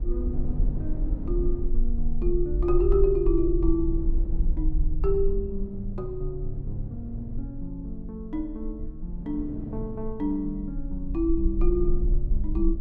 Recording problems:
low-frequency rumble; below 44 Hz, strongest tone 20 Hz, SNR 1 dB
wind noise; below 270 Hz, SNR 13 dB

